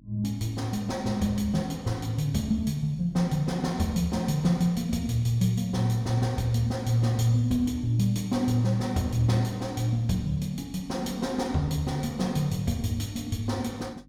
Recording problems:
hum; 50 Hz, harmonics up to 300 Hz, SNR 27 dB

